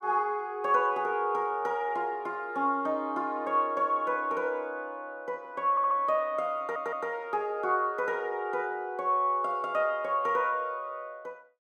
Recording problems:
audio stuttering; at 5.5 s and at 6.5 s

